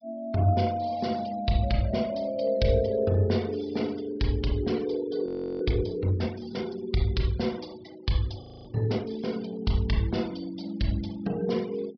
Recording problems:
treble cut off; nothing above 5.5 kHz
noise reduction artefacts; signal-to-artefact ratio 21 dB
audio freezing; at 5.5 s and at 8.5 s

